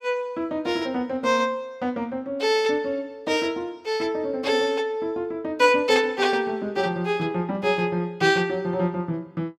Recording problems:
none

